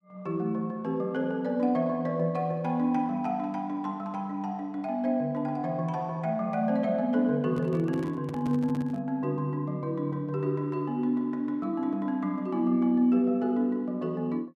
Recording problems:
microphone handling noise; from 7.5 to 9 s; peak -6 dB vs average level

